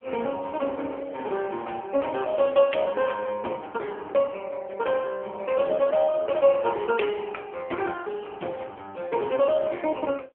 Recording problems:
phone line; 240 Hz to 3.3 kHz, AMR-NB

